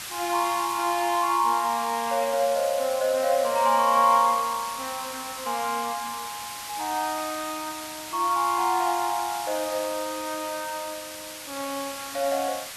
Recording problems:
hiss; slope +2 dB per octave, SNR 10 dB

